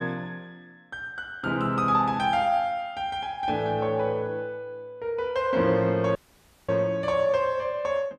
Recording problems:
audio cutting out; at 6 s for 0.5 s

